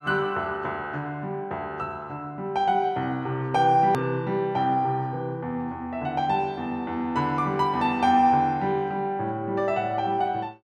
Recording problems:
click at an edit; at 4 s

